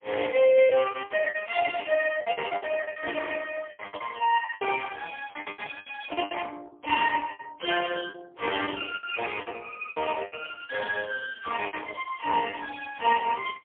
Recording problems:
phone line; 300 Hz to 2.8 kHz, AMR-NB, then MP3
lost packets; 14% of the sound replaced, filled with the last packet

